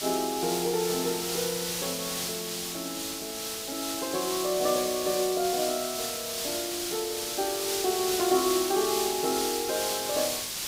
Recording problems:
hiss; slope +2 dB per octave, SNR 1 dB

